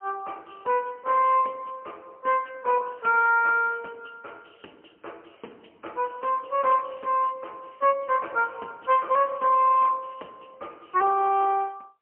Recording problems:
phone line; 280 Hz to 2.8 kHz, AMR-NB, then MP3

